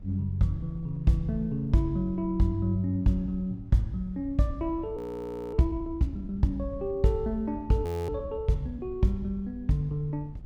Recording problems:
wind noise; below 110 Hz, SNR 18 dB
frozen audio; at 5 s for 0.5 s and at 8 s

